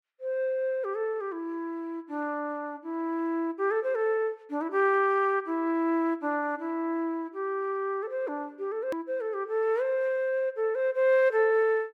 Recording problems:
edit click; at 9 s

